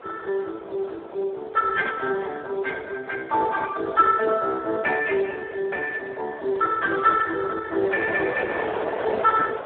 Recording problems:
telephone audio; 340 Hz to 2.1 kHz, Speex
wind noise; below 1 kHz, SNR 11 dB

